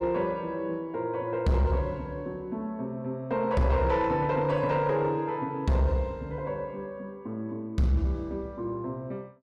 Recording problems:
distorted audio; soft clipping, signal-to-distortion ratio 11 dB

